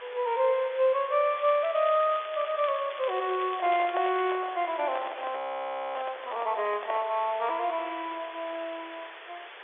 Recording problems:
phone line; 320 Hz to 3.7 kHz, G.711
hiss; SNR 15 dB
crackle; from 1.5 to 4.5 s; loose cable, SNR 17 dB
microphone handling noise; from 3.5 to 7 s; peak -2 dB vs average level
frozen audio; at 5.5 s for 0.5 s

